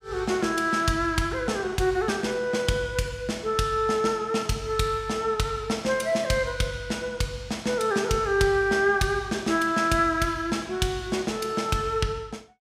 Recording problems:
none

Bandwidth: 15.5 kHz